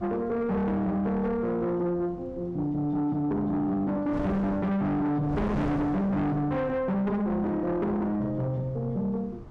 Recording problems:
distortion; soft clipping, signal-to-distortion ratio 7 dB
wind noise; below 430 Hz, SNR 11 dB

